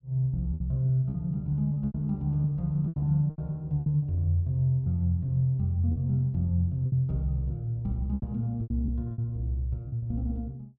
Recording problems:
packet loss; 11% of the sound replaced, filled with repeated pitch periods

